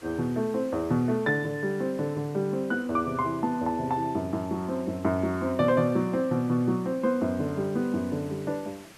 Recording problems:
background hiss; slope -2 dB per octave, SNR 23 dB

